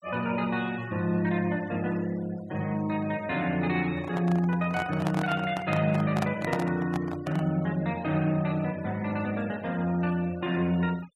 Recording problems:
noise reduction artefacts; signal-to-artefact ratio 21 dB
handling noise; from 4 to 7.5 s; peak +2 dB vs average level

